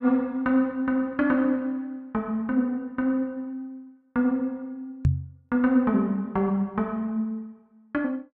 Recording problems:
microphone bump; at 5 s; peak +8 dB vs average level

